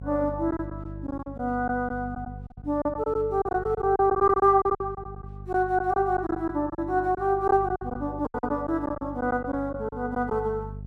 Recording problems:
electrical hum; 50 Hz, harmonics up to 450 Hz, SNR 15 dB
lost packets; 11% of the sound replaced, filled with silence

